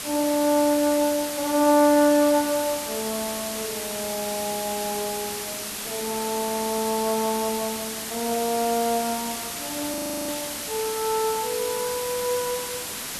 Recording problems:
hiss; slope 0 dB per octave, SNR 5 dB
audio freezing; at 10 s

